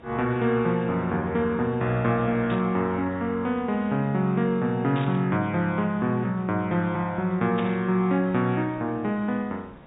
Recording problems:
low-pass filter; nothing above 4 kHz
background hiss; SNR 24 dB
burst of static; at 2.5 s, at 5 s and at 7.5 s; peak -7 dB vs average level

